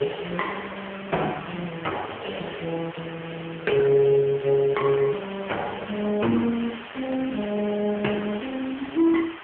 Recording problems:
phone line; 240 Hz to 3.2 kHz, AMR-NB
background hiss; SNR 15 dB
crackle; from 2 to 4 s and from 4 to 6.5 s; loose cable, SNR 27 dB

